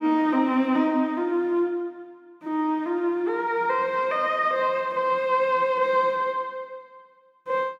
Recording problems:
none

